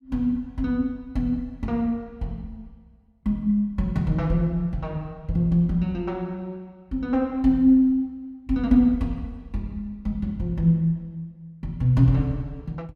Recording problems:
none

